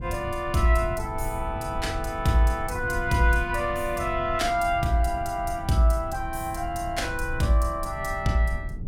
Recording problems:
low-frequency rumble; below 100 Hz, SNR 10 dB

